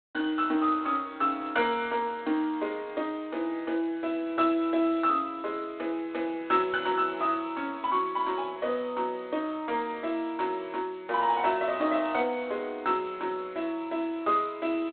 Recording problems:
phone line; 260 Hz to 3.5 kHz, G.726

